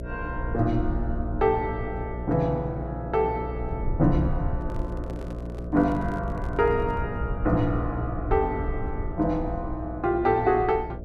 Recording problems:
electrical hum; 60 Hz, harmonics up to 660 Hz, SNR 9 dB
rumble; below 88 Hz, SNR 9 dB
microphone handling noise; from 4.5 to 7 s; peak -11 dB vs average level

